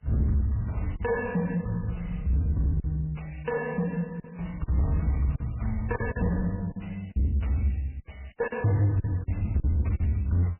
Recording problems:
codec artefacts; MP3, log-spectral distance 4 dB, nothing above 2.7 kHz
distorted audio; soft clipping, signal-to-distortion ratio 11 dB
lost packets; 7% of the sound replaced, filled with silence

